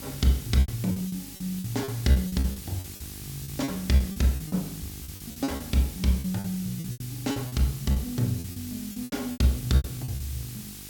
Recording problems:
hum; 50 Hz, harmonics up to 1.2 kHz, SNR 18 dB
hiss; slope +5 dB per octave, SNR 12 dB
packet loss; 16% of the sound replaced, filled with repeated pitch periods

